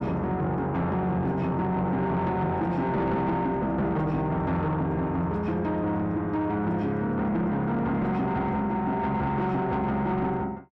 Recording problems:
distortion; soft clipping, signal-to-distortion ratio 10 dB

